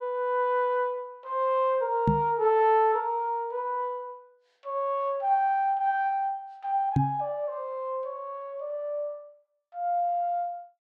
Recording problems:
microphone bump; at 2 s and at 7 s; peak +6 dB vs average level

